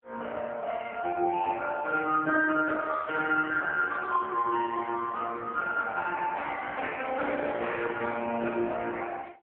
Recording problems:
telephone audio; 260 Hz to 3.2 kHz, AMR-NB

